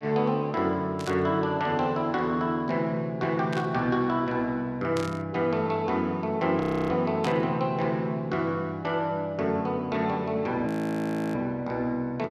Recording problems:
burst of static; 4 times, first at 1 s; peak -4 dB vs average level
frozen audio; at 6.5 s and at 11 s for 0.5 s

